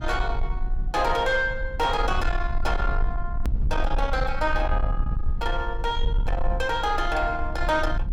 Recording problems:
distortion; soft clipping, signal-to-distortion ratio 12 dB
rumble; below 52 Hz, strongest tone 20 Hz, SNR 4 dB
click at an edit; at 3.5 s

